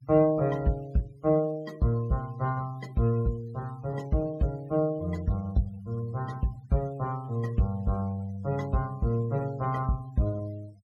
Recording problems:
denoising artefacts; signal-to-artefact ratio 25 dB

